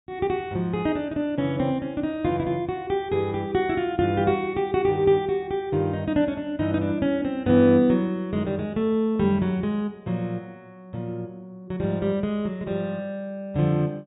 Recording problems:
treble missing; nothing above 4 kHz

